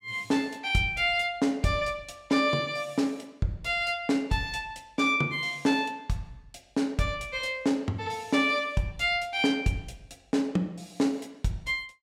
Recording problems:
none

